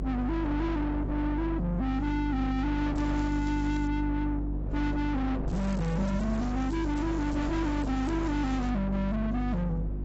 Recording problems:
codec artefacts; AAC, log-spectral distance 2 dB, nothing above 7.6 kHz
distortion; soft clipping, signal-to-distortion ratio 7 dB
hum; 50 Hz, harmonics up to 350 Hz, SNR 4 dB
wind on the microphone; below 870 Hz, SNR 9 dB
crackle; at 3 s and from 5.5 to 8.5 s; loose cable, SNR 23 dB

